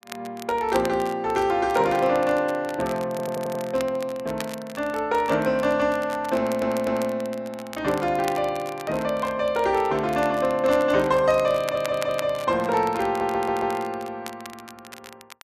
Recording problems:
crackle; vinyl, SNR 18 dB
stutter; 4 times, first at 3 s

